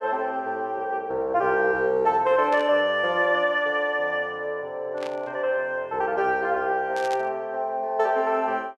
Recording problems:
static burst; at 2.5 s, at 5 s and at 7 s; peak -10 dB vs average level

